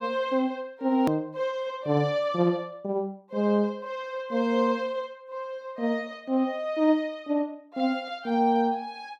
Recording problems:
click at an edit; at 1 s

